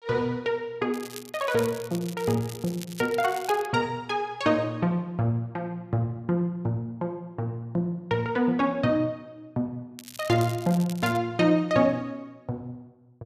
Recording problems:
crackle; from 1 to 3.5 s and from 10 to 11 s; loose cable, SNR 16 dB

